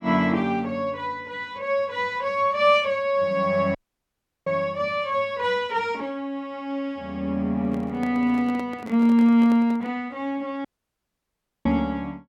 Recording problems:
audio cutting out; at 4 s for 0.5 s and at 11 s for 1 s
microphone handling noise; from 7.5 to 10 s; peak -9 dB vs average level

